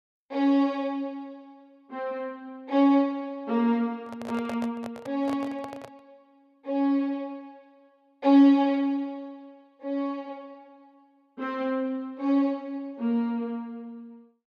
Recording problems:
handling noise; from 4 to 6 s; peak -7 dB vs average level

